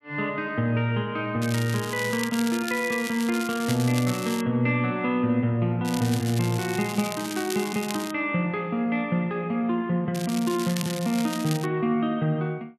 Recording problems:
crackle; from 1.5 to 4.5 s, from 6 to 8 s and from 10 to 12 s; loose cable, SNR 10 dB

